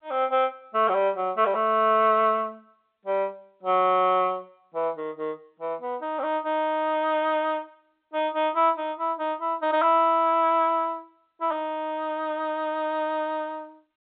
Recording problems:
phone line; 280 Hz to 3.6 kHz, G.711

